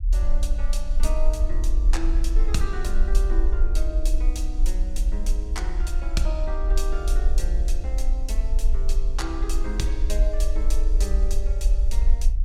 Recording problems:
low-frequency rumble; below 44 Hz, strongest tone 20 Hz, SNR -9 dB

